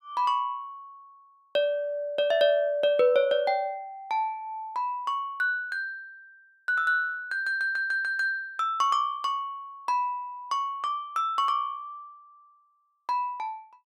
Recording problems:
none

